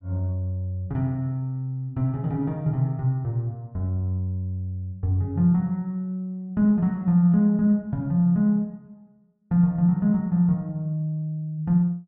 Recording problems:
none

